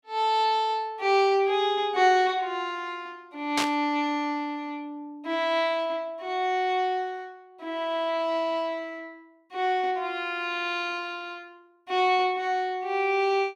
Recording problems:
burst of static; at 3.5 s; peak +4 dB vs average level

